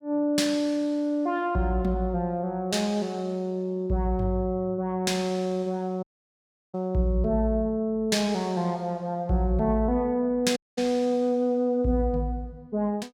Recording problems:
dropout; at 6 s for 0.5 s and at 11 s

